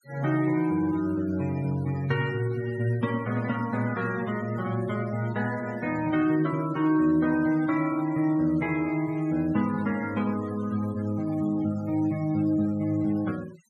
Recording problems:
noise reduction artefacts; signal-to-artefact ratio 19 dB

